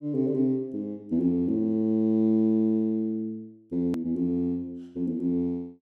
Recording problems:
hard cut with a click; at 4 s

